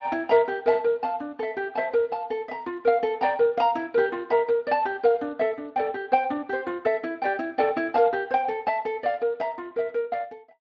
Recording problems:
codec artefacts; Speex, log-spectral distance 2 dB

